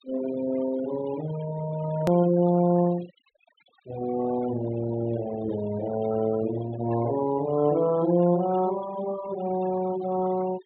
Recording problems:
treble missing; nothing above 4 kHz
noise reduction artefacts; signal-to-artefact ratio 15 dB
edit click; at 2 s

